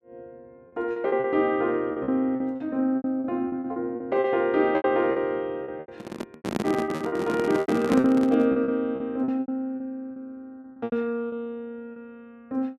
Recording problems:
lost packets; 14% of the sound replaced, filled with repeated pitch periods
microphone handling noise; from 6 to 8.5 s; peak +4 dB vs average level

